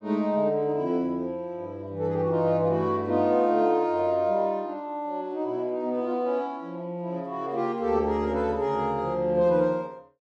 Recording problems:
none

